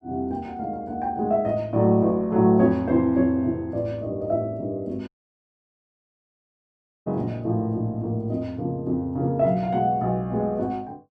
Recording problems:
dropout; at 5 s for 2 s

